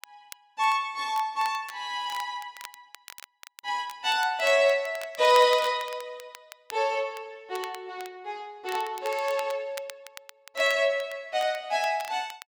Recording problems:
crackling; vinyl, SNR 19 dB

